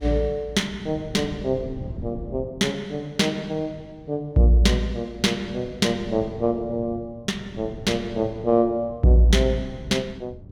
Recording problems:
wind noise; below 200 Hz, SNR 16 dB

